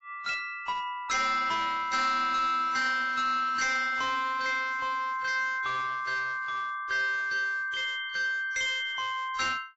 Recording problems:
lossy codec; AAC, log-spectral distance 2 dB, nothing above 7.6 kHz
distorted audio; hard clipping, uneven, signal-to-distortion ratio 11 dB

